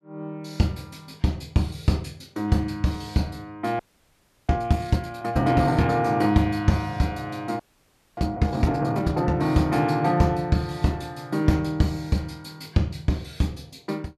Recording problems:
audio freezing; at 4 s for 0.5 s and at 7.5 s for 0.5 s

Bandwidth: 14 kHz